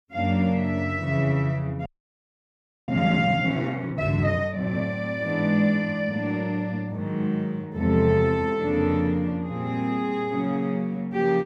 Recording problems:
frozen audio; at 2 s for 1 s

